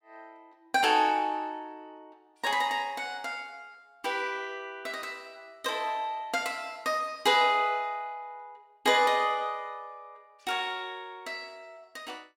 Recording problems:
none

